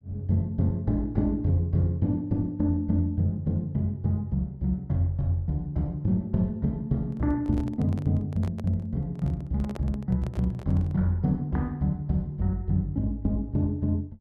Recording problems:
handling noise; from 7 to 11 s; peak -9 dB vs average level

